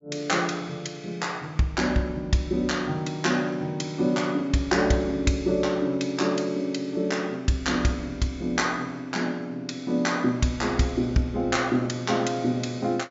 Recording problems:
treble missing; nothing above 7.4 kHz

